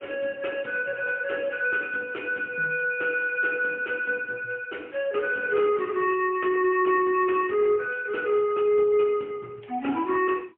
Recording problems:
telephone audio; 240 Hz to 3.1 kHz, AMR-NB, then MP3

